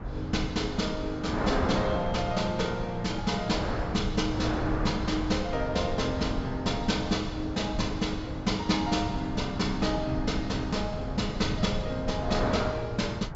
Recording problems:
treble missing; nothing above 8 kHz
low-frequency rumble; below 130 Hz, SNR 8 dB
wind noise; below 1.1 kHz, SNR 8 dB

